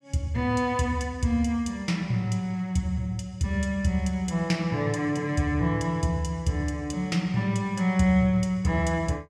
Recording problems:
none

